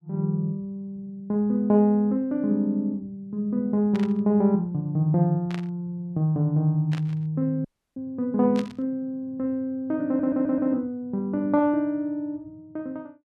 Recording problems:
burst of static; 4 times, first at 4 s; peak -8 dB vs average level
dropout; at 7.5 s
stutter; at 10 s

